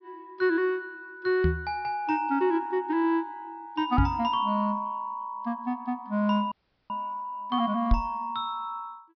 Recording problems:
treble cut off; nothing above 5.5 kHz
microphone bump; at 1.5 s, at 4 s and at 8 s; peak +7 dB vs average level
audio cutting out; at 6.5 s

